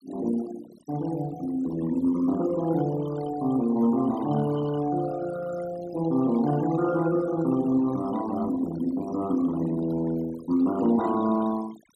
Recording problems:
noise reduction artefacts; signal-to-artefact ratio 16 dB

